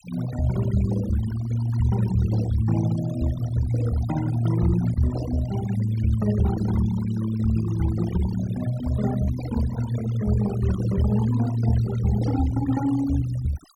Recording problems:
noise reduction artefacts; signal-to-artefact ratio 14 dB

